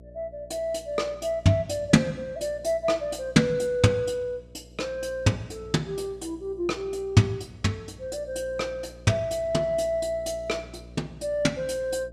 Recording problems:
mains hum; 60 Hz, harmonics up to 660 Hz, SNR 21 dB

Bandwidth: 14.5 kHz